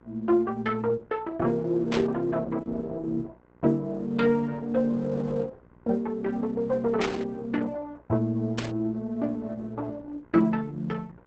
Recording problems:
lossy compression; Opus, log-spectral distance 2 dB, nothing above 7.8 kHz
mains hum; 60 Hz, harmonics up to 2.1 kHz, SNR 29 dB
static burst; at 2 s, at 7 s and at 8.5 s; peak -2 dB vs average level

